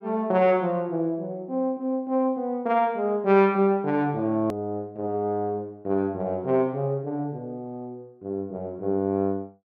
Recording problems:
click at an edit; at 4.5 s

